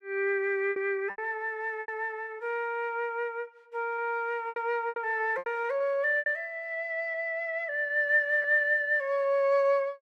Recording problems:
packet loss; 7% of the sound replaced, filled with repeated pitch periods

